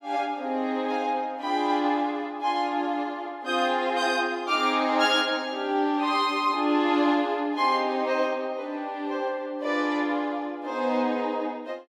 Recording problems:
none

